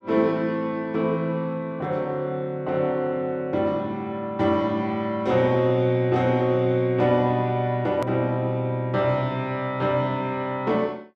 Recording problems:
click at an edit; at 8 s

